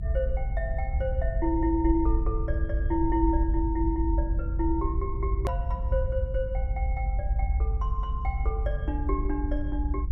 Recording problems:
low-frequency rumble; below 66 Hz, strongest tone 48 Hz, SNR -2 dB
click at an edit; at 5.5 s

